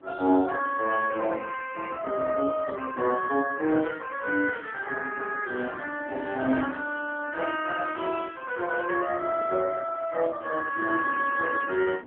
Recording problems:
telephone audio; 220 Hz to 3.3 kHz, AMR-NB
wind on the microphone; below 530 Hz, SNR 19 dB

